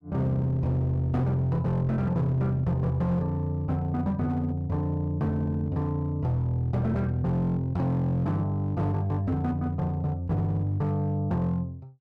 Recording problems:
distortion; hard clipping, uneven, signal-to-distortion ratio 11 dB

